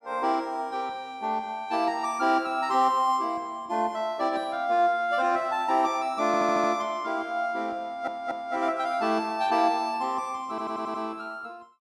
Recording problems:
stutter; at 6.5 s, at 8 s and at 10 s

